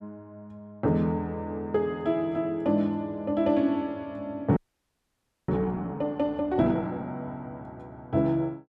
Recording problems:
frozen audio; at 4.5 s for 1 s

